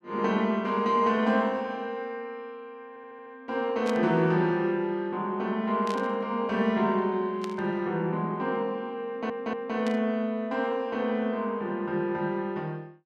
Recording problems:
audio stuttering; at 3 s and at 9 s
burst of static; 4 times, first at 4 s; peak -7 dB vs average level

